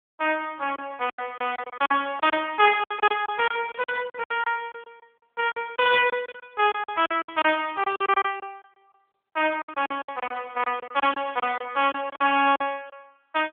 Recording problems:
phone line; 280 Hz to 3.5 kHz, AMR-NB
packet loss; 14% of the sound replaced, filled with silence

